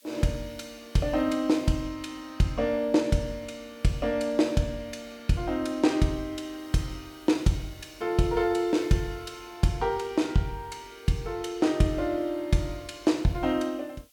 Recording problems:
hiss; slope +5 dB per octave, SNR 30 dB

